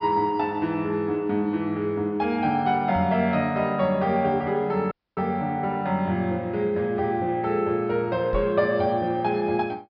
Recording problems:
low-pass filter; nothing above 5.5 kHz
microphone thump; at 3 s and at 8.5 s; peak -3 dB vs average level
audio cutting out; at 5 s

